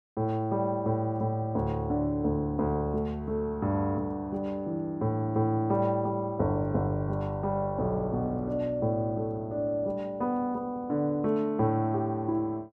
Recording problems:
none

